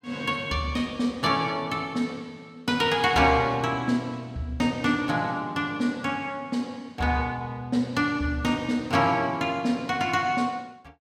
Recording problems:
none

